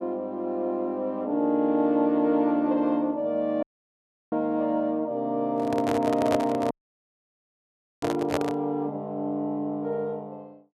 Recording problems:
dropout; at 3.5 s for 0.5 s and at 6.5 s for 1.5 s
handling noise; from 5.5 to 8.5 s; peak +3 dB vs average level

